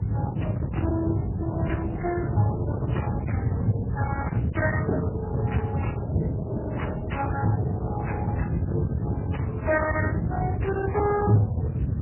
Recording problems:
lossy codec; Speex, then MP3, log-spectral distance 3 dB, nothing above 2.9 kHz
distortion; hard clipping, uneven, signal-to-distortion ratio 11 dB
rumble; below 180 Hz, SNR 0 dB

